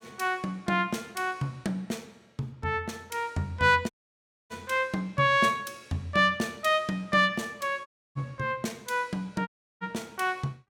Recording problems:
audio cutting out; at 4 s for 0.5 s, at 8 s and at 9.5 s

